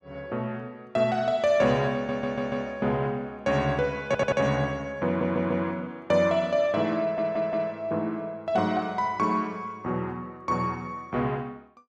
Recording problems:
audio stuttering; 4 times, first at 2 s

